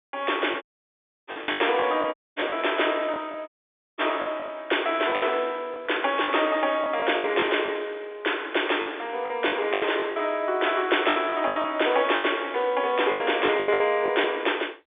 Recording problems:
telephone audio; 320 Hz to 3.6 kHz, G.711
lost packets; 12% of the sound replaced, filled with the last packet
dropout; at 0.5 s for 0.5 s, at 2 s and at 3.5 s for 0.5 s

